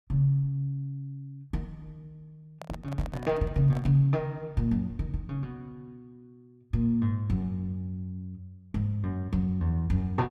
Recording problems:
handling noise; from 2.5 to 4 s; peak -9 dB vs average level

